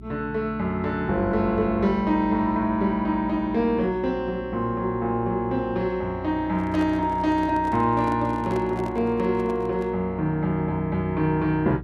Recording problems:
hum; 60 Hz, harmonics up to 420 Hz, SNR 16 dB
handling noise; from 6.5 to 10 s; peak -9 dB vs average level

